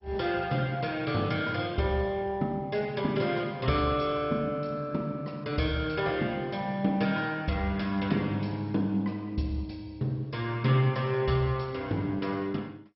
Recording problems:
lossy compression; MP2, log-spectral distance 3 dB, nothing above 5.5 kHz

